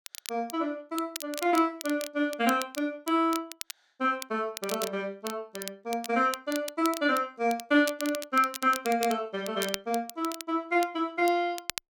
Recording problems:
crackling; vinyl, SNR 12 dB

